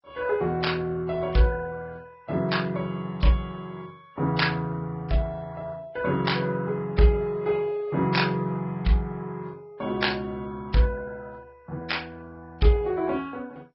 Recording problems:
lossy codec; Vorbis, then MP2, log-spectral distance 3 dB, nothing above 5.3 kHz

